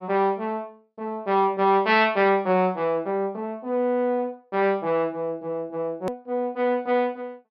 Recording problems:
treble cut off; nothing above 5.5 kHz
click at an edit; at 6 s

